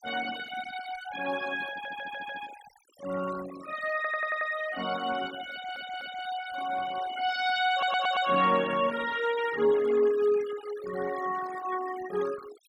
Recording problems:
noise reduction artefacts; signal-to-artefact ratio 14 dB
audio stuttering; 4 times, first at 1.5 s

